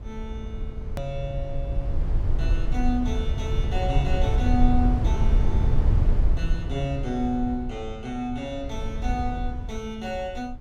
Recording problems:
low-frequency rumble; below 78 Hz, SNR -3 dB
edit click; at 1 s

